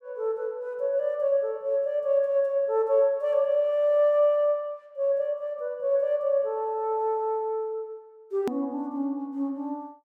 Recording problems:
hard cut with a click; at 8.5 s

